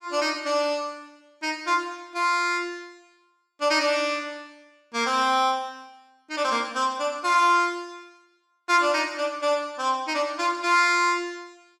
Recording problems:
none

